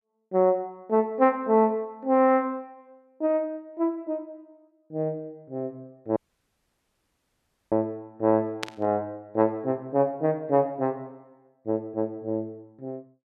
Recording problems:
audio cutting out; at 6 s for 1.5 s
static burst; at 8.5 s; peak 0 dB vs average level

